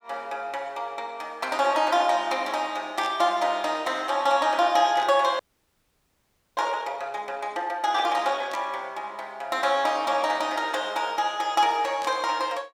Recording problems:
static burst; 4 times, first at 3 s; peak -9 dB vs average level
frozen audio; at 5.5 s for 1 s

